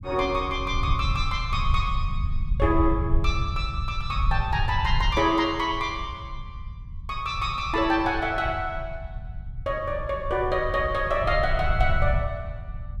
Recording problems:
low-frequency rumble; below 84 Hz, SNR 5 dB

